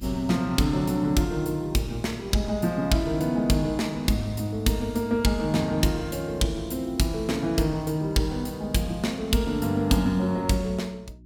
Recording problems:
electrical hum; 60 Hz, harmonics up to 360 Hz, SNR 23 dB

